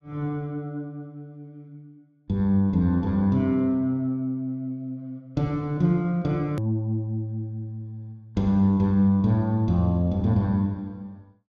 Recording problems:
edit click; at 6.5 s

